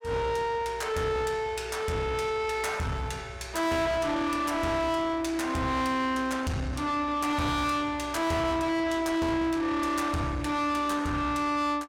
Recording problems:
distorted audio; soft clipping, signal-to-distortion ratio 7 dB

